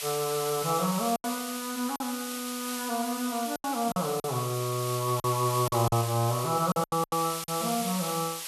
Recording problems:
hiss; SNR 6 dB
packet loss; 8% of the sound replaced, filled with silence

